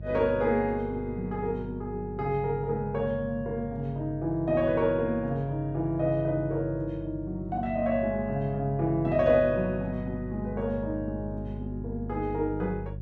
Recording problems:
electrical hum; 50 Hz, harmonics up to 400 Hz, SNR 11 dB

